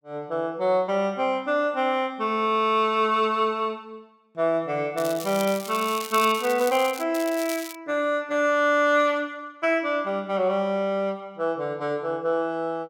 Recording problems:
crackling; from 5 to 7 s and at 7 s; loose cable, SNR 12 dB

